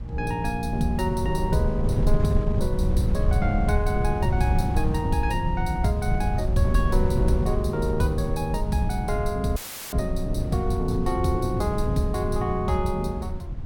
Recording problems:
wind on the microphone; below 110 Hz, SNR 1 dB
audio cutting out; at 9.5 s; filled with static

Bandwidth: 17 kHz